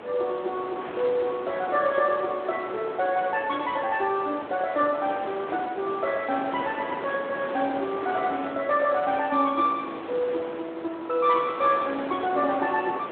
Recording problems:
phone line; 240 Hz to 3.9 kHz, Speex
wind noise; below 1.3 kHz, SNR 10 dB

